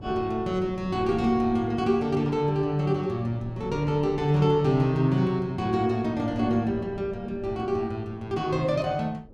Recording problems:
wind noise; below 270 Hz, SNR 19 dB

